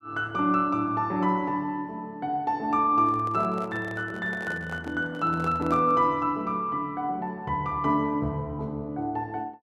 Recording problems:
microphone handling noise; from 3 to 6 s; peak -8 dB vs average level

